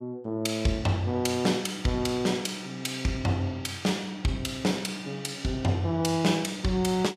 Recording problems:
none

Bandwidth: 15 kHz